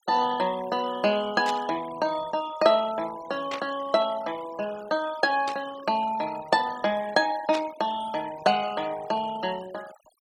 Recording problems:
denoising artefacts; signal-to-artefact ratio 17 dB
static burst; 4 times, first at 1.5 s; peak -4 dB vs average level

